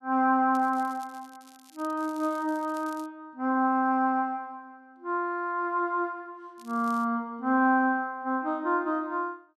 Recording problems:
crackling; from 0.5 to 3 s and at 6.5 s; loose cable, SNR 26 dB

